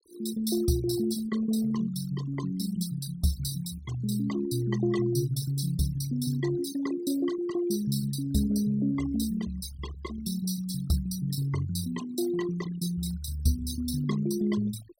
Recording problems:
denoising artefacts; signal-to-artefact ratio 14 dB

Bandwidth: 16.5 kHz